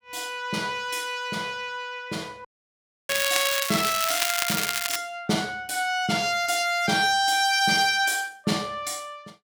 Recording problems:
dropout; at 2.5 s for 0.5 s
crackle; from 3 to 5 s; loose cable, SNR 1 dB

